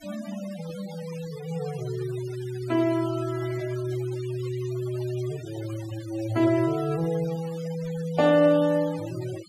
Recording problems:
denoising artefacts; signal-to-artefact ratio 17 dB

